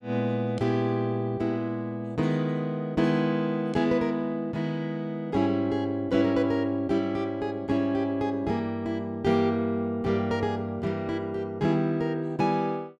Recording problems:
none

